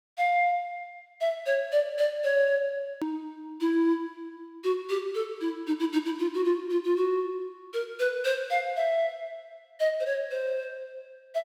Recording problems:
click at an edit; at 3 s

